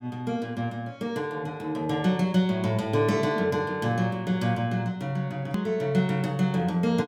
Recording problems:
edit click; at 5.5 s

